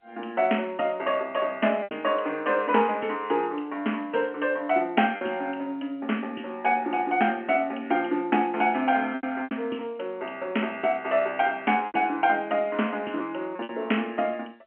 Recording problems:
telephone audio; 240 Hz to 3.1 kHz, G.711
packet loss; 3% of the sound replaced, filled with repeated pitch periods

